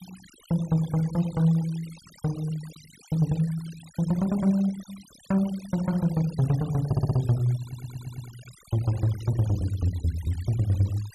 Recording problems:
noise reduction artefacts; signal-to-artefact ratio 21 dB
stutter; at 7 s and at 7.5 s

